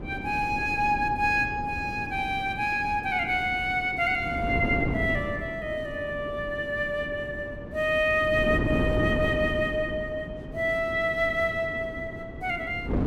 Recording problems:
wind noise; below 350 Hz, SNR 8 dB

